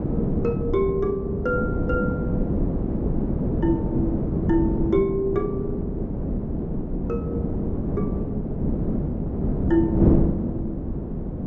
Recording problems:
low-pass filter; nothing above 7.2 kHz
wind noise; below 300 Hz, SNR -1 dB

